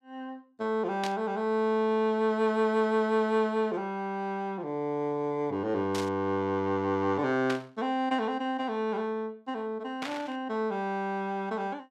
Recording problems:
burst of static; 4 times, first at 1 s; peak -3 dB vs average level

